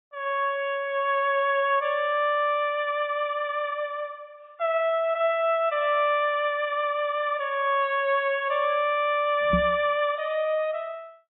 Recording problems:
codec artefacts; AAC, log-spectral distance 2 dB, nothing above 3.4 kHz
microphone bump; at 9.5 s; peak +2 dB vs average level

